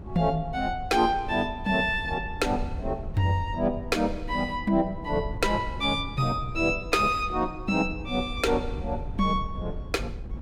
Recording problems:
wind on the microphone; below 96 Hz, SNR 11 dB

